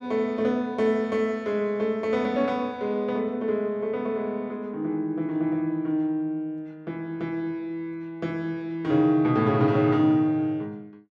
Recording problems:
none

